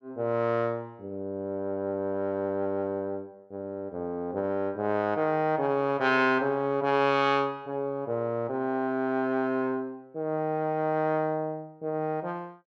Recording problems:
none

